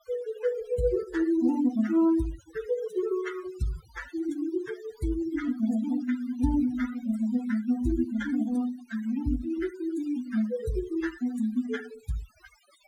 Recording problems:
noise reduction artefacts; signal-to-artefact ratio 15 dB

